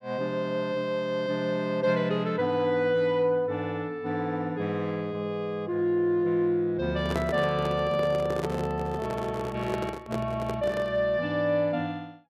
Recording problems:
microphone handling noise; from 7 to 11 s; peak +1 dB vs average level

